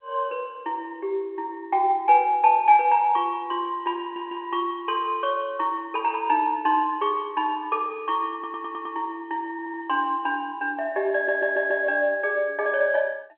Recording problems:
telephone audio; 300 Hz to 3.3 kHz, G.711
audio stuttering; 4 times, first at 4 s

